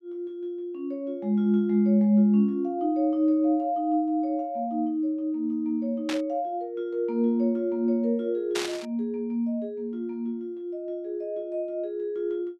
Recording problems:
burst of static; at 6 s and at 8.5 s; peak -1 dB vs average level

